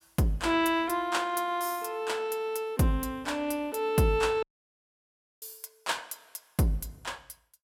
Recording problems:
dropout; at 4.5 s for 1 s

